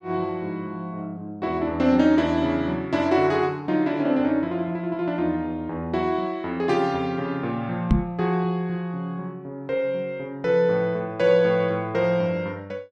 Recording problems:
microphone thump; at 8 s; peak +8 dB vs average level

